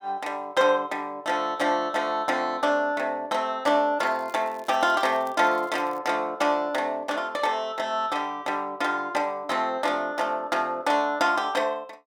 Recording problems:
crackling; from 4 to 6 s; loose cable, SNR 28 dB

